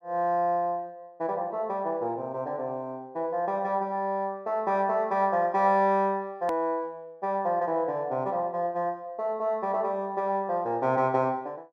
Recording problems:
click at an edit; at 6.5 s

